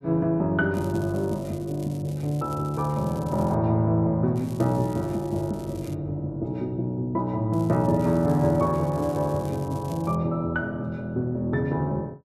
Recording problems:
crackling; from 0.5 to 3.5 s, from 4.5 to 6 s and from 7.5 to 10 s; loose cable, SNR 24 dB

